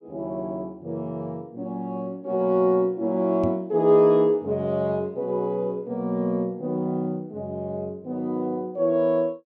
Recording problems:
microphone bump; at 3.5 s; peak -1 dB vs average level

